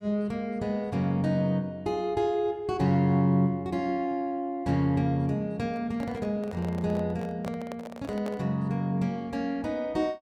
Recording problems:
microphone handling noise; from 5.5 to 8.5 s; peak -5 dB vs average level

